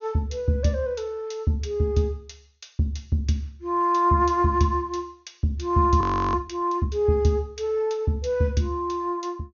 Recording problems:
low-pass filter; nothing above 6.7 kHz
frozen audio; at 6 s

